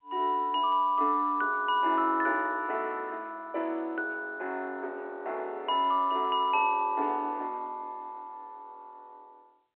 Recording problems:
phone line; 260 Hz to 3.4 kHz, G.711

